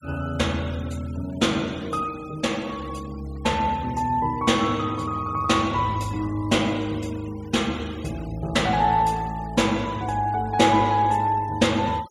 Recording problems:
denoising artefacts; signal-to-artefact ratio 22 dB

